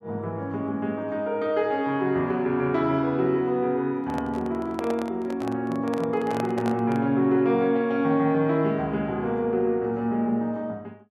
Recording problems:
microphone handling noise; from 4 to 7 s; peak -3 dB vs average level

